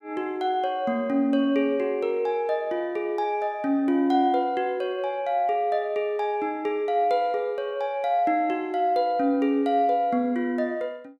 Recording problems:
none

